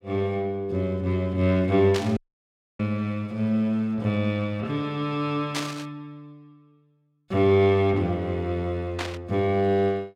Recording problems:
static burst; at 2 s, at 5.5 s and at 9 s; peak -1 dB vs average level
audio cutting out; at 2 s for 0.5 s

